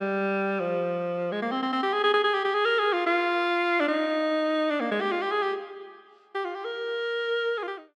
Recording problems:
none

